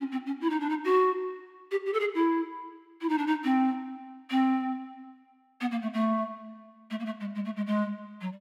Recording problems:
none

